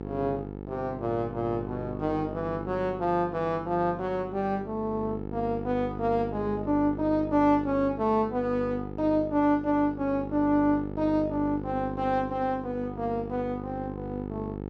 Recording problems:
mains hum; 50 Hz, harmonics up to 1.4 kHz, SNR 9 dB

